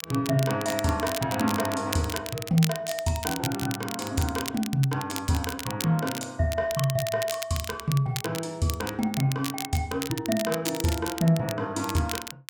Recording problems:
crackling; vinyl, SNR 8 dB

